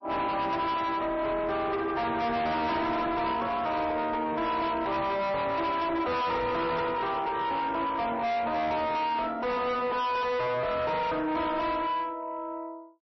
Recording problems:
codec artefacts; MP3, log-spectral distance 2 dB, nothing above 5.7 kHz
distortion; soft clipping, signal-to-distortion ratio 6 dB

